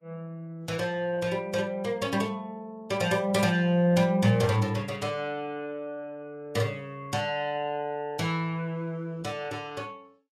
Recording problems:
codec artefacts; Vorbis, log-spectral distance 2 dB, nothing above 12.7 kHz

